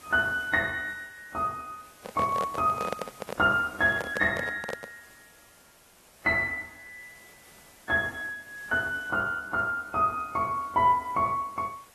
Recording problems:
lossy compression; AAC, log-spectral distance 7 dB
hiss; slope -3 dB per octave, SNR 24 dB
handling noise; from 2 to 5 s; peak -2 dB vs average level

